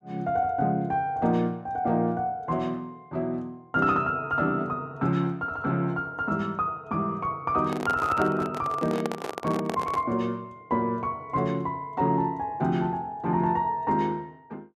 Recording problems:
microphone handling noise; from 7.5 to 10 s; peak -1 dB vs average level

